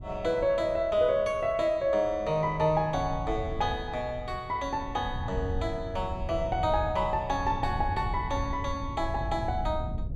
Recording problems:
wind on the microphone; below 110 Hz, SNR 9 dB

